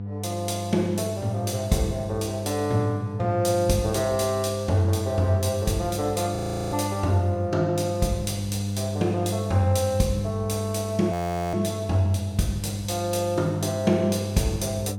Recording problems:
hum; 50 Hz, harmonics up to 700 Hz, SNR 6 dB
frozen audio; at 6.5 s and at 11 s

